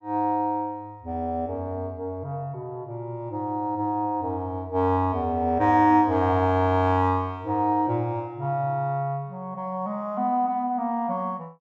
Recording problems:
none

